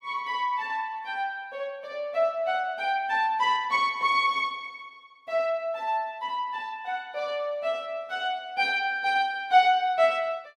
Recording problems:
none

